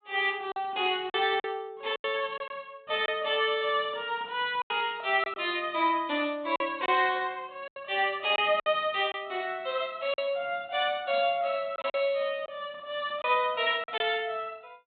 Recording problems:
low-pass filter; nothing above 4 kHz
packet loss; 6% of the sound replaced, filled with silence

